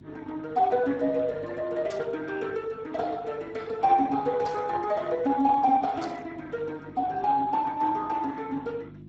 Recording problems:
lossy codec; Speex, log-spectral distance 3 dB
hum; 50 Hz, harmonics up to 450 Hz, SNR 21 dB
burst of static; at 2 s, at 4.5 s and at 6 s; peak -12 dB vs average level

